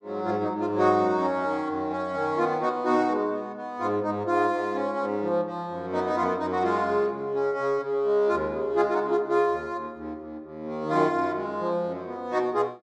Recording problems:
none

